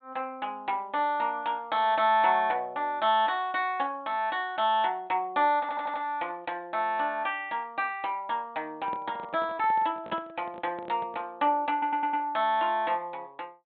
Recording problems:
low-pass filter; nothing above 4 kHz
audio stuttering; at 5.5 s and at 12 s
handling noise; from 9 to 11 s; peak -7 dB vs average level

